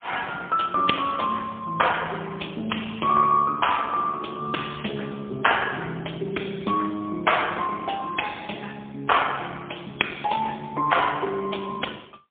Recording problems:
telephone audio; 240 Hz to 3.4 kHz, AMR-NB, then MP3

